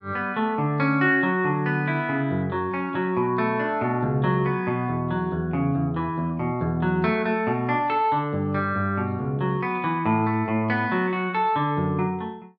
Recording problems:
none

